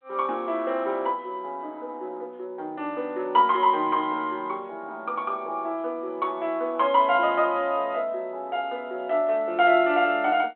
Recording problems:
phone line; 260 Hz to 3.5 kHz, G.726

